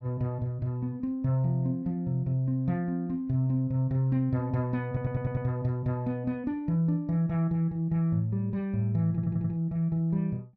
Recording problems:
audio stuttering; at 5 s and at 9 s

